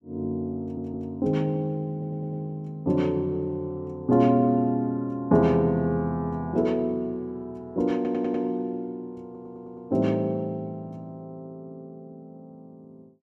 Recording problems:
stutter; 4 times, first at 0.5 s

